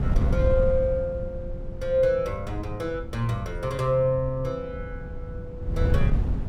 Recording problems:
wind on the microphone; below 110 Hz, SNR 4 dB

